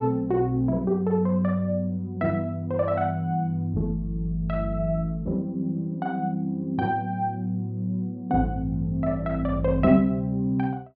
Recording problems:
treble missing; nothing above 5.5 kHz

